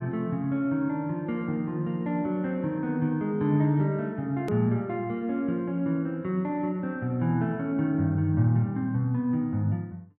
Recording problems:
hard cut with a click; at 4.5 s

